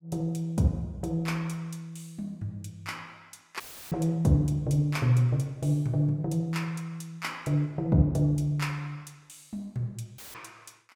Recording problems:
dropout; at 3.5 s and at 10 s; filled with static

